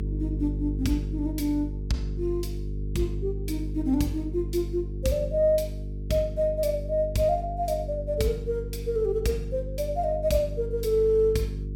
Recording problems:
hum; 50 Hz, harmonics up to 450 Hz, SNR 6 dB

